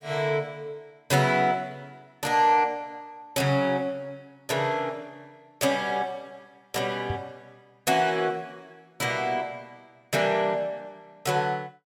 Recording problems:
knock on the microphone; at 7 s; peak -2 dB vs average level

